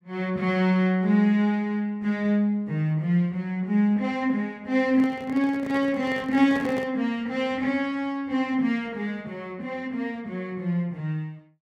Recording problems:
microphone handling noise; from 5 to 7 s; peak -6 dB vs average level

